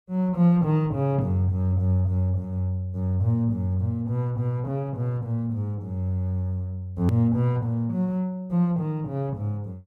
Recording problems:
click at an edit; at 7 s

